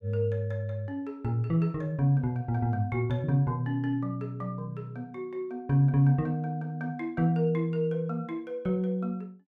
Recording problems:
none

